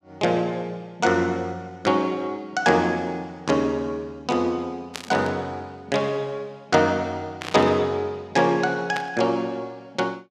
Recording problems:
burst of static; at 5 s, at 7.5 s and at 9 s; peak -3 dB vs average level

